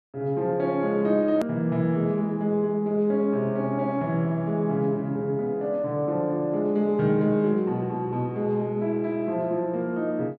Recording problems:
click at an edit; at 1.5 s

